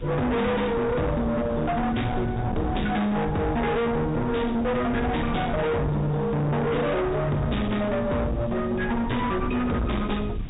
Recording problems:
treble cut off; nothing above 4 kHz
distorted audio; hard clipping, signal-to-distortion ratio 6 dB
hiss; SNR 28 dB
rumble; below 240 Hz, SNR 9 dB

